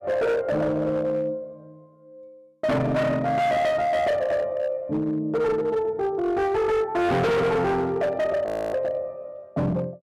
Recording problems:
distortion; hard clipping, signal-to-distortion ratio 7 dB
audio freezing; at 8.5 s

